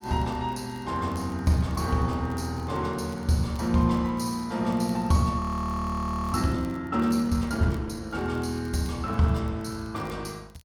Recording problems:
crackling; vinyl, SNR 29 dB
frozen audio; at 5.5 s for 1 s

